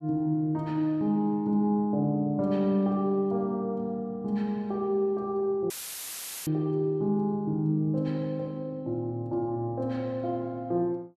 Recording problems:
dropout; at 5.5 s for 1 s; filled with static

